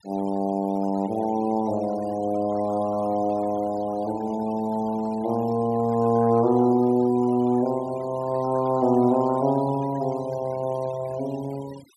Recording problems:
noise reduction artefacts; signal-to-artefact ratio 20 dB

